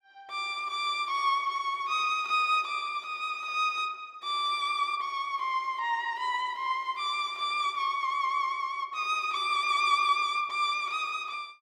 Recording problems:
none

